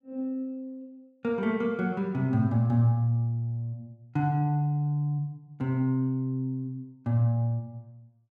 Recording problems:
none

